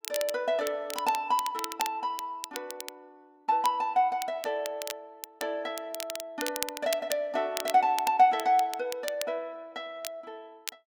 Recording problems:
crackling; vinyl, SNR 10 dB

